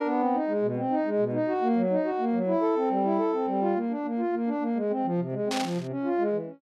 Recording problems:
burst of static; at 5.5 s; peak -2 dB vs average level

